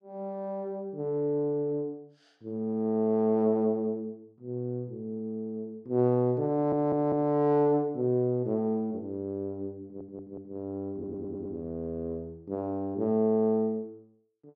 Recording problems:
stutter; at 6.5 s, at 10 s and at 11 s

